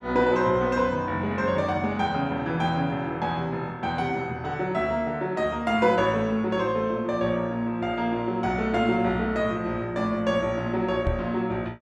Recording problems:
knock on the microphone; at 11 s; peak +1 dB vs average level

